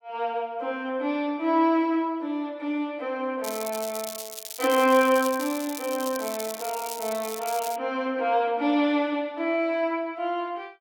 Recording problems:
crackling; from 3.5 to 8 s; loose cable, SNR 10 dB

